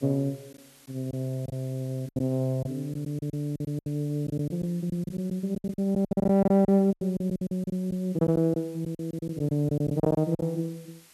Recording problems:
background hiss; slope 0 dB per octave, SNR 26 dB
lost packets; 14% of the sound replaced, filled with silence

